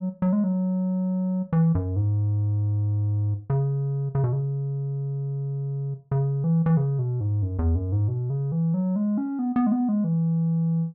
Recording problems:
none

